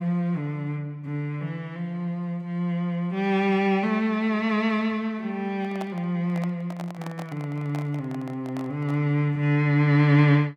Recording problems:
microphone handling noise; from 5.5 to 9 s; peak -8 dB vs average level

